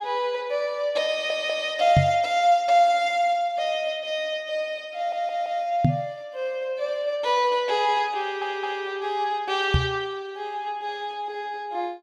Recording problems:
stutter; at 1 s, at 5 s and at 8 s
knock on the microphone; at 2 s, at 6 s and at 9.5 s; peak +8 dB vs average level

